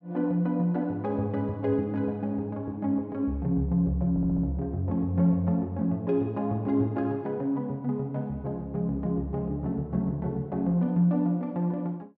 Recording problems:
stutter; at 4 s

